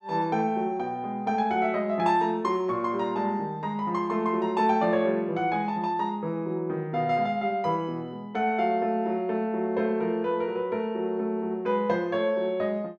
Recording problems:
none

